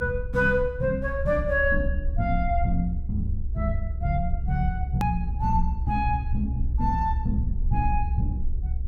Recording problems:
rumble; below 66 Hz, SNR 2 dB
hard cut with a click; at 5 s

